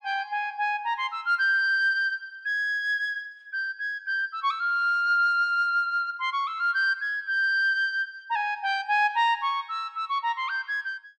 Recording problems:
none

